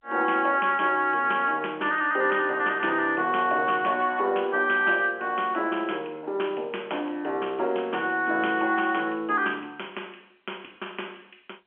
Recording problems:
telephone audio; 280 Hz to 3.3 kHz, G.711

